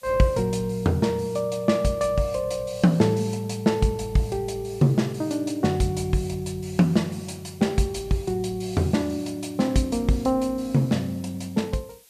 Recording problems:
background hiss; SNR 27 dB

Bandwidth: 14.5 kHz